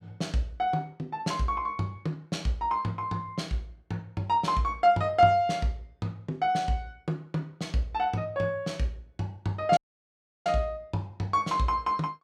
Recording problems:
audio cutting out; at 10 s for 0.5 s

